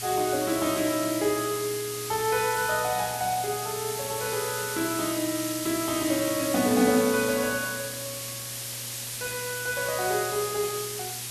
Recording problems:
electrical hum; 60 Hz, harmonics up to 720 Hz, SNR 18 dB
hiss; slope +2 dB per octave, SNR 5 dB

